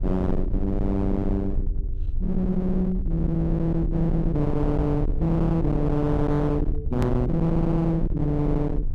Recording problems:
distorted audio; hard clipping, signal-to-distortion ratio 7 dB
rumble; below 110 Hz, SNR 5 dB
edit click; at 7 s

